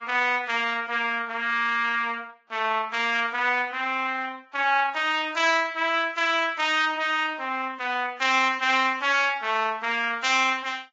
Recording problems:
codec artefacts; Vorbis, log-spectral distance 3 dB

